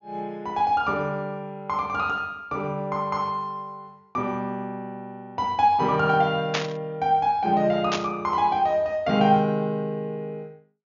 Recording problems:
treble cut off; nothing above 7 kHz
burst of static; at 6.5 s and at 8 s; peak +3 dB vs average level

